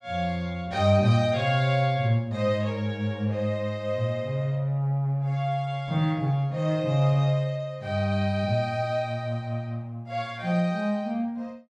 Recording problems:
none

